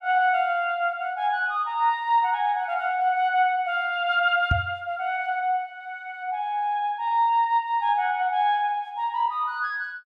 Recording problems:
microphone bump; at 4.5 s; peak +3 dB vs average level

